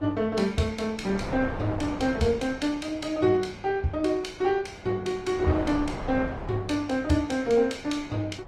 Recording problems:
lossy compression; Opus, log-spectral distance 2 dB, nothing above 15.5 kHz
electrical hum; 50 Hz, harmonics up to 1.2 kHz, SNR 26 dB
wind on the microphone; below 790 Hz, SNR 12 dB

